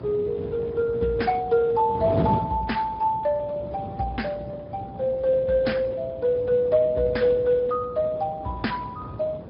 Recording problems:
treble cut off; nothing above 5.2 kHz
lossy codec; Speex, log-spectral distance 3 dB
hum; 60 Hz, harmonics up to 540 Hz, SNR 22 dB
wind on the microphone; below 440 Hz, SNR 11 dB

